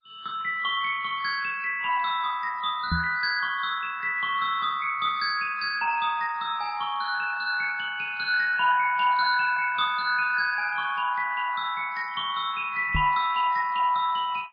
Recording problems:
lossy compression; MP2, then MP3, log-spectral distance 4 dB, nothing above 4.1 kHz
knock on the microphone; at 3 s and at 13 s; peak +1 dB vs average level

